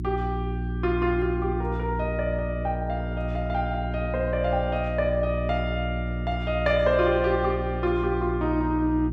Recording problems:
hum; 60 Hz, harmonics up to 360 Hz, SNR 4 dB

